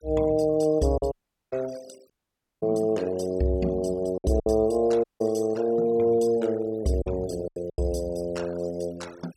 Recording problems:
noise reduction artefacts; signal-to-artefact ratio 22 dB
packet loss; 4% of the sound replaced, filled with silence
audio cutting out; at 1 s, at 2 s for 0.5 s and at 5 s

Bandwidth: 17 kHz